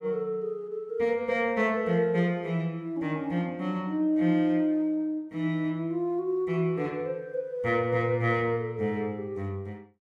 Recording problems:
none

